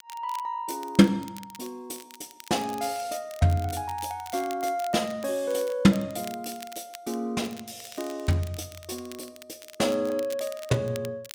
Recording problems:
crackle; vinyl, SNR 19 dB

